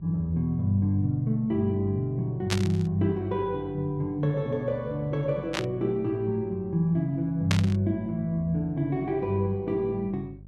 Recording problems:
hum; 50 Hz, harmonics up to 400 Hz, SNR 21 dB
burst of static; at 2.5 s, at 5.5 s and at 7.5 s; peak +3 dB vs average level

